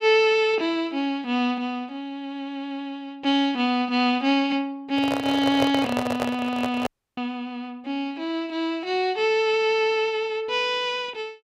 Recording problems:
microphone handling noise; from 5 to 7 s; peak +3 dB vs average level
dropout; at 7 s

